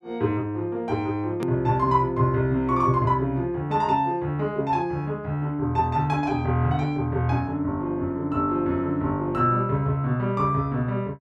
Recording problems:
edit click; at 1.5 s

